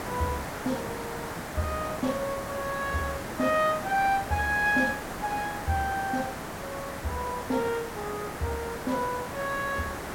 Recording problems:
background hiss; SNR 6 dB

